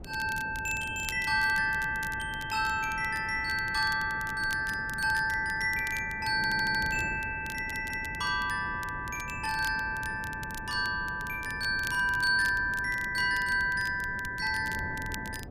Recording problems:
wind on the microphone; below 310 Hz, SNR 15 dB
crackling; vinyl, SNR 18 dB
audio stuttering; at 6.5 s and at 7.5 s

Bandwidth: 15 kHz